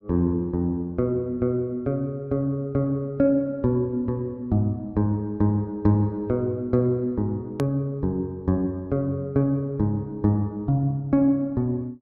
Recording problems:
low-pass filter; nothing above 8 kHz
click at an edit; at 7.5 s

